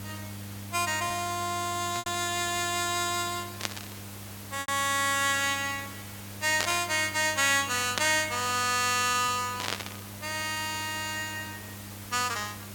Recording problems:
electrical hum; 50 Hz, harmonics up to 800 Hz, SNR 17 dB
hiss; slope -2 dB per octave, SNR 15 dB
packet loss; 2% of the sound replaced, filled with repeated pitch periods
static burst; 5 times, first at 2 s; peak +3 dB vs average level

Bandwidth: 17.5 kHz